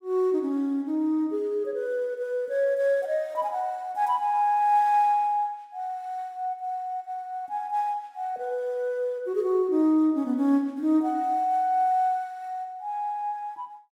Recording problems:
none

